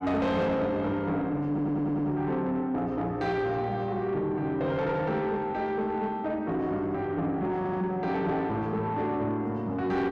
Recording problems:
distortion; soft clipping, signal-to-distortion ratio 11 dB
stutter; at 1.5 s and at 7.5 s

